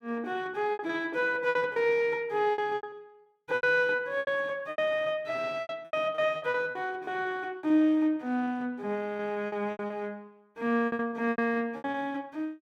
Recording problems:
lost packets; 14% of the sound replaced, filled with repeated pitch periods

